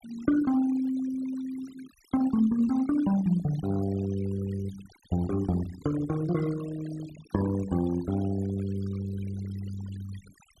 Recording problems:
denoising artefacts; signal-to-artefact ratio 18 dB

